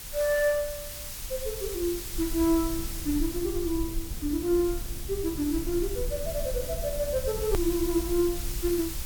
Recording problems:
hiss; slope +2 dB per octave, SNR 8 dB
rumble; below 66 Hz, SNR 10 dB
hard cut with a click; at 7.5 s

